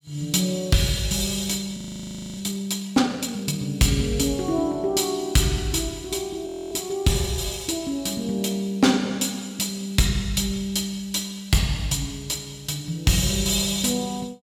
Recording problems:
distortion; hard clipping, signal-to-distortion ratio 10 dB
frozen audio; at 2 s for 0.5 s and at 6.5 s

